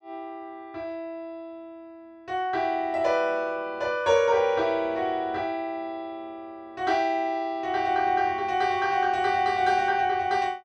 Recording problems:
none

